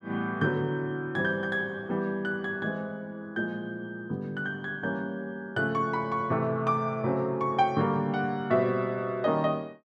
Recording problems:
none

